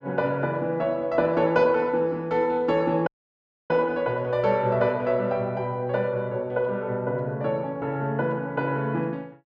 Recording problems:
dropout; at 3 s for 0.5 s

